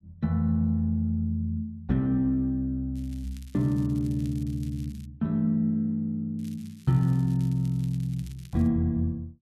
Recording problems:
crackle; from 3 to 5 s and from 6.5 to 8.5 s; loose cable, SNR 27 dB

